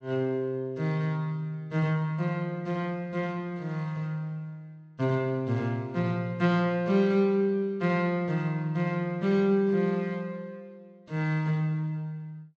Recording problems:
treble missing; nothing above 8 kHz

